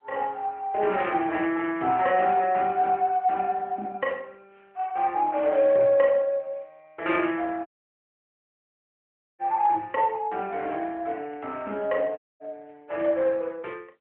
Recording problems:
phone line; 280 Hz to 3.2 kHz, AMR-NB
audio cutting out; at 7.5 s for 1.5 s and at 12 s

